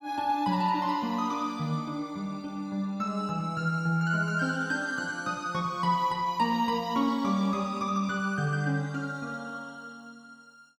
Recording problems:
none

